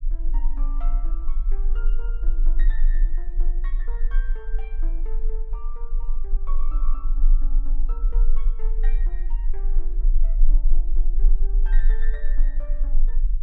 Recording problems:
low-frequency rumble; below 30 Hz, strongest tone 18 Hz, SNR -19 dB

